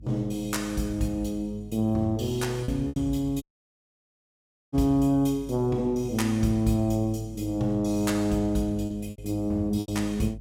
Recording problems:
hum; 50 Hz, harmonics up to 300 Hz, SNR 18 dB
lost packets; 4% of the sound replaced, filled with repeated pitch periods
dropout; at 3.5 s for 1.5 s

